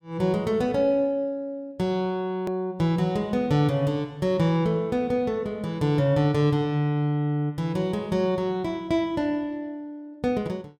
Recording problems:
edit click; at 2.5 s

